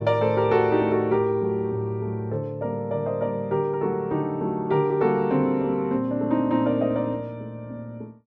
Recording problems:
none

